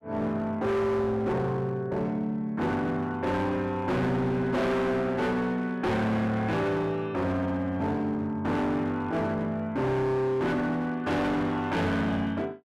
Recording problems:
distorted audio; hard clipping, signal-to-distortion ratio 7 dB

